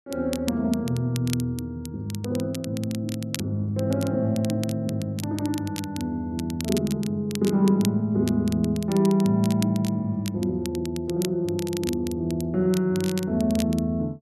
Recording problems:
crackling; vinyl, SNR 14 dB

